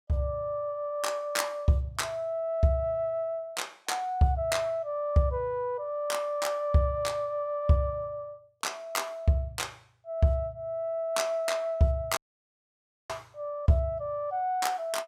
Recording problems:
audio cutting out; at 12 s for 1 s

